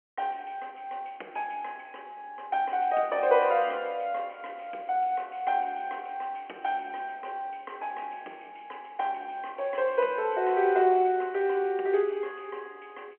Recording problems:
phone line; 300 Hz to 3.1 kHz, G.711

